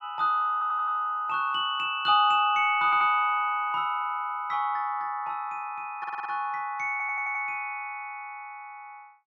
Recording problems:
stutter; 4 times, first at 0.5 s

